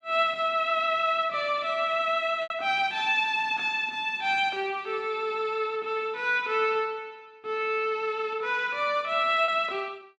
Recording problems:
packet loss; 1.4% of the sound replaced, filled with repeated pitch periods

